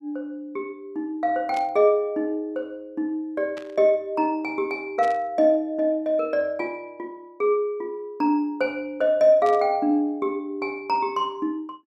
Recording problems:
burst of static; 4 times, first at 1.5 s; peak -12 dB vs average level

